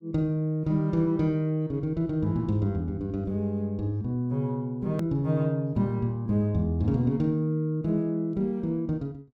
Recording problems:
edit click; at 5 s

